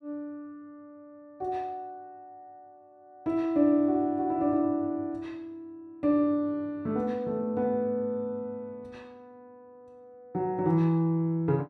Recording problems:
none

